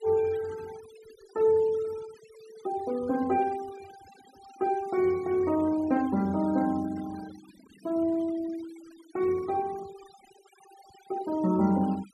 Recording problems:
noise reduction artefacts; signal-to-artefact ratio 21 dB

